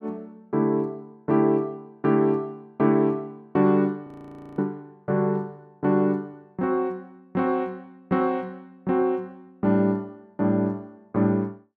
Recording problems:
frozen audio; at 4 s for 0.5 s

